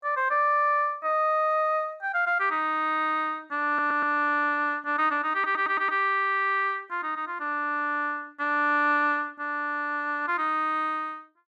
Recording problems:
audio stuttering; at 3.5 s and at 5.5 s

